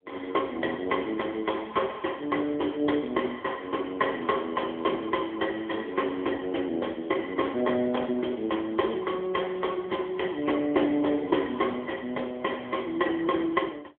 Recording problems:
telephone audio; 220 Hz to 3.4 kHz, AMR-NB

